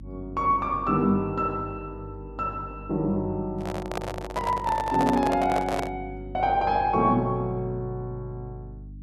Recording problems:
electrical hum; 50 Hz, harmonics up to 300 Hz, SNR 15 dB
microphone handling noise; from 3.5 to 6 s; peak +1 dB vs average level

